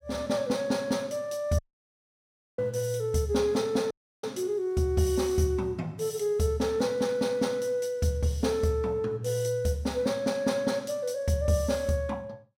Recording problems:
dropout; at 1.5 s for 1 s and at 4 s

